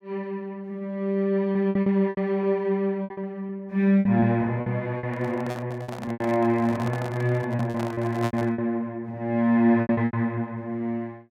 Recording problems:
packet loss; 11% of the sound replaced, filled with repeated pitch periods
handling noise; from 5 to 8.5 s; peak -2 dB vs average level

